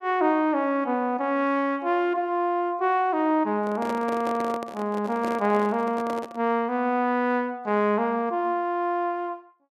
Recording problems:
microphone handling noise; from 3.5 to 6.5 s; peak -4 dB vs average level

